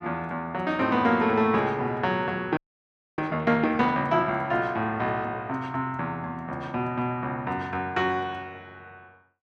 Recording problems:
audio freezing; at 2.5 s for 0.5 s

